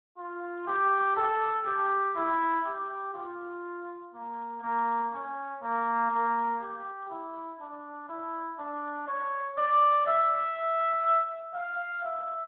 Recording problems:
phone line; 260 Hz to 3.5 kHz, Speex

